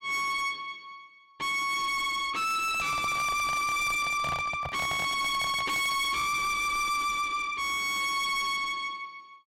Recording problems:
distortion; soft clipping, signal-to-distortion ratio 6 dB
handling noise; from 2.5 to 6 s; peak -4 dB vs average level

